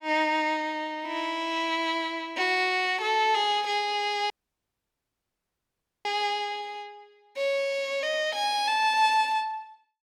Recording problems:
dropout; at 4.5 s for 2 s

